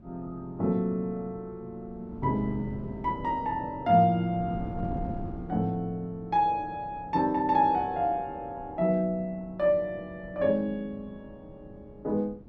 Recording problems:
wind on the microphone; below 260 Hz, SNR 15 dB

